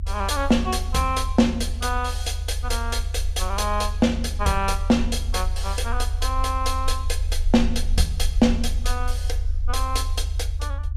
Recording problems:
low-frequency rumble; below 74 Hz, SNR 3 dB

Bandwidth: 14.5 kHz